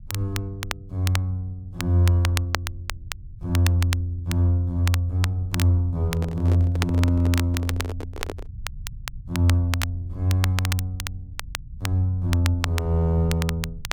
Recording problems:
rumble; below 88 Hz, SNR 18 dB
crackling; vinyl, SNR 11 dB
handling noise; from 6 to 8.5 s; peak -5 dB vs average level

